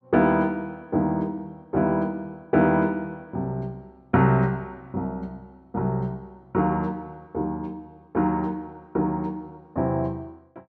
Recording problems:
none

